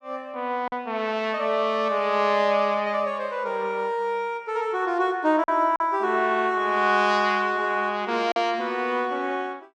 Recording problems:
lost packets; 1.7% of the sound replaced, filled with silence

